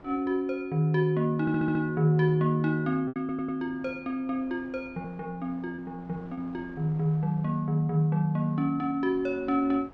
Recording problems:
wind on the microphone; below 780 Hz, SNR 26 dB
packet loss; 1.8% of the sound replaced, filled with repeated pitch periods
audio stuttering; at 1.5 s and at 3 s

